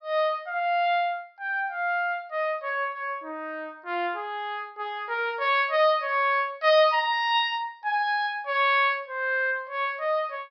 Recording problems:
low-pass filter; nothing above 5.5 kHz

